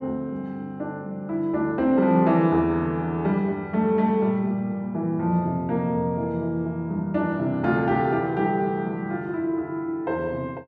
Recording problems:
none

